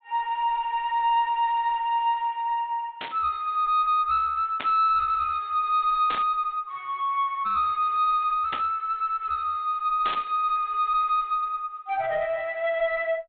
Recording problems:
low-pass filter; nothing above 4 kHz
distorted audio; soft clipping, signal-to-distortion ratio 10 dB
static burst; 5 times, first at 3 s; peak -4 dB vs average level

